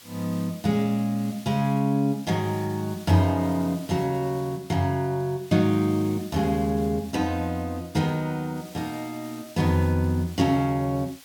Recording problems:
background hiss; slope +1 dB per octave, SNR 21 dB

